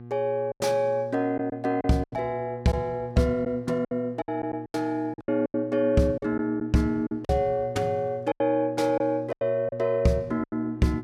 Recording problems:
hum; 60 Hz, harmonics up to 840 Hz, SNR 15 dB
packet loss; 10% of the sound replaced, filled with silence

